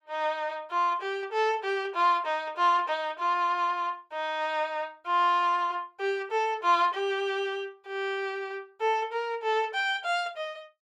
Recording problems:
none

